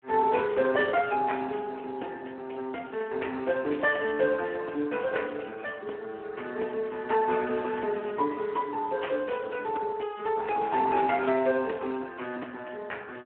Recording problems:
telephone audio; 220 Hz to 3.2 kHz, Speex

